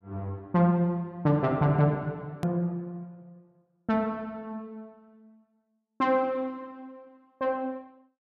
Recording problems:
click at an edit; at 2.5 s

